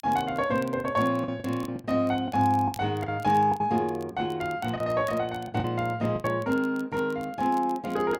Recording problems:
crackle; vinyl, SNR 25 dB
packet loss; 8% of the sound replaced, filled with the last packet

